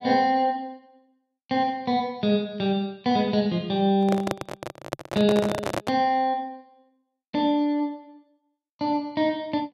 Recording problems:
microphone handling noise; from 4 to 6 s; peak +1 dB vs average level

